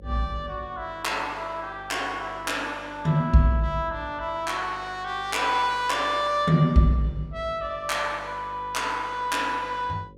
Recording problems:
hum; 50 Hz, harmonics up to 550 Hz, SNR 23 dB

